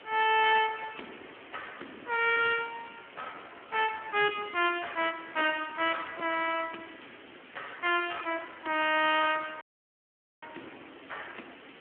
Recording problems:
phone line; 240 Hz to 3.3 kHz, Speex
distorted audio; hard clipping, uneven, signal-to-distortion ratio 11 dB
hiss; SNR 21 dB
audio cutting out; at 9.5 s for 1 s

